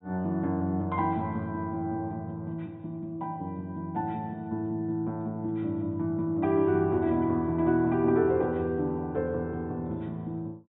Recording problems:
treble missing; nothing above 3.8 kHz

